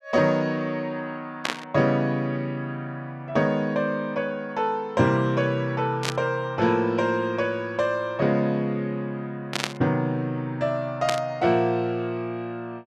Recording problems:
static burst; 4 times, first at 1.5 s; peak +3 dB vs average level

